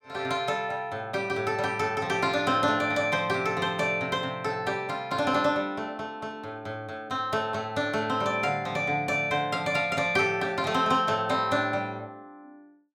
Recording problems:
none

